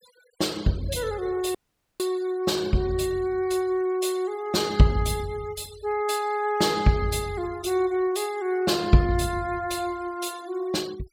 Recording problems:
denoising artefacts; signal-to-artefact ratio 20 dB
audio cutting out; at 1.5 s

